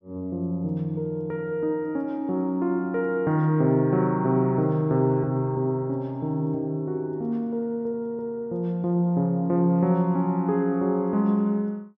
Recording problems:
none

